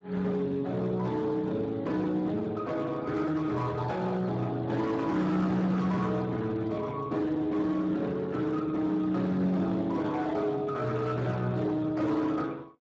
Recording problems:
codec artefacts; Speex, log-spectral distance 3 dB, nothing above 7.6 kHz
distorted audio; hard clipping, signal-to-distortion ratio 11 dB

